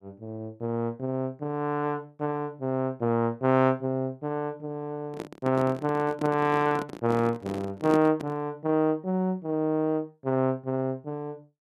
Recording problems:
handling noise; from 5 to 8.5 s; peak +1 dB vs average level

